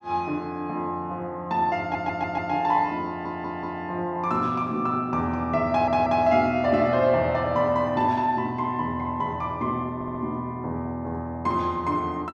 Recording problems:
audio stuttering; 4 times, first at 2 s

